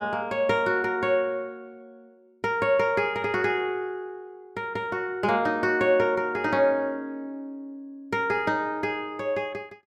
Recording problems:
none

